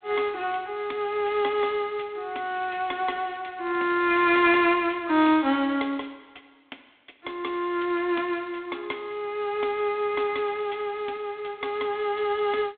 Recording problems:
telephone audio; 220 Hz to 3.8 kHz, G.726

